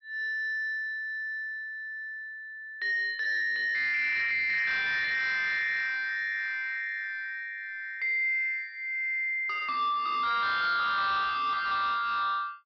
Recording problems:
treble cut off; nothing above 5.5 kHz
distortion; soft clipping, signal-to-distortion ratio 10 dB

